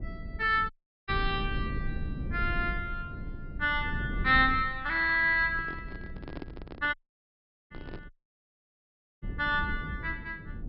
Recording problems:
low-pass filter; nothing above 5.3 kHz
low-frequency rumble; below 140 Hz, SNR 10 dB
dropout; at 0.5 s, at 7 s for 1 s and at 8 s for 1 s
handling noise; from 5.5 to 8 s; peak -8 dB vs average level

